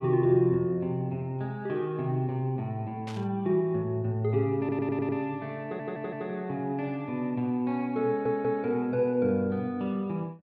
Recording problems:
burst of static; at 3 s; peak -11 dB vs average level
stutter; at 4.5 s, at 5.5 s and at 8 s

